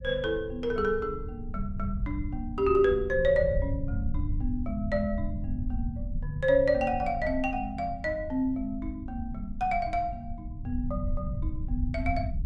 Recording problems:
rumble; below 92 Hz, SNR 7 dB

